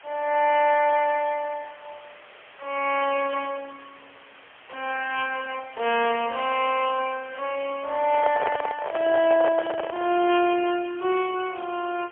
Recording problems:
phone line; 300 Hz to 3.2 kHz, AMR-NB, then MP3
hiss; SNR 23 dB
microphone handling noise; from 8 to 10 s; peak +2 dB vs average level

